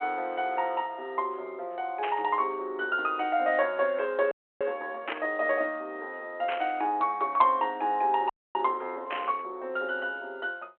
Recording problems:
telephone audio; 320 Hz to 3.1 kHz, G.726
burst of static; 4 times, first at 2 s; peak 0 dB vs average level
audio freezing; at 4.5 s and at 8.5 s

